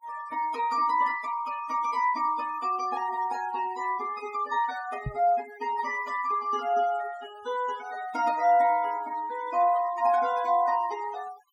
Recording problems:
noise reduction artefacts; signal-to-artefact ratio 18 dB
knock on the microphone; at 5 s; peak -2 dB vs average level

